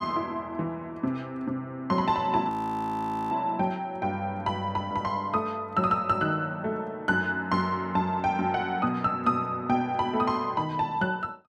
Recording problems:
audio freezing; at 2.5 s for 1 s

